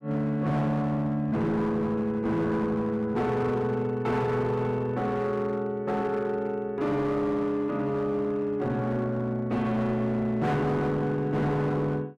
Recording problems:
distorted audio; hard clipping, signal-to-distortion ratio 11 dB

